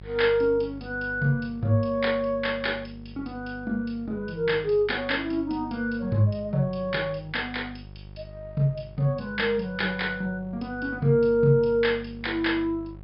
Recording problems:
low-pass filter; nothing above 5.5 kHz
hum; 50 Hz, harmonics up to 750 Hz, SNR 18 dB

